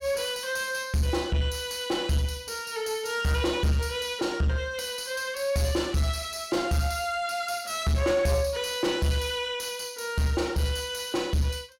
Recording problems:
distortion; soft clipping, signal-to-distortion ratio 11 dB

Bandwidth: 16.5 kHz